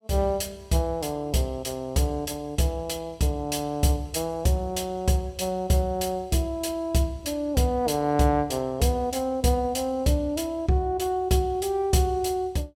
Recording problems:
none

